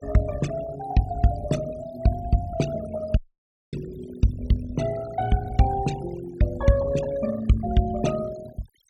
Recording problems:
noise reduction artefacts; signal-to-artefact ratio 16 dB
dropout; at 3 s for 0.5 s

